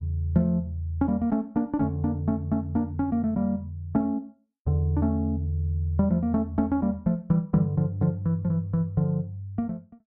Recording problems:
none

